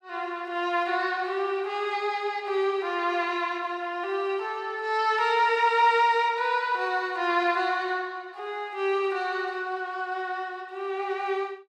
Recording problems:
none

